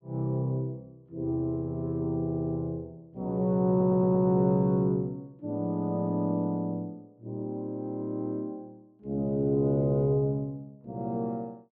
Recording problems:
audio stuttering; at 2.5 s and at 3.5 s

